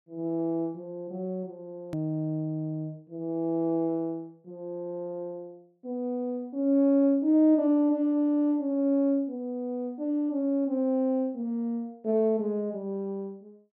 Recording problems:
click at an edit; at 2 s

